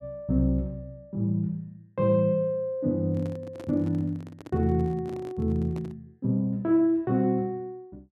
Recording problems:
microphone handling noise; from 3 to 6 s; peak -11 dB vs average level

